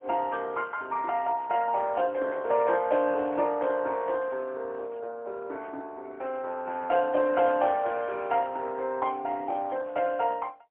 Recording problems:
telephone audio; 260 Hz to 3.2 kHz, AMR-NB, then MP3

